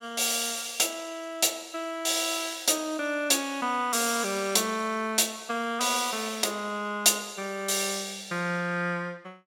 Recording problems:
none

